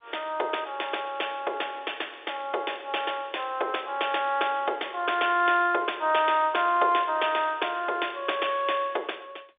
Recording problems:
phone line; 320 Hz to 3.6 kHz, G.711

